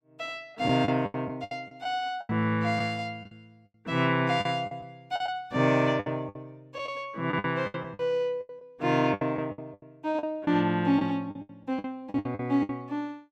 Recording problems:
packet loss; 14% of the sound replaced, filled with the last packet

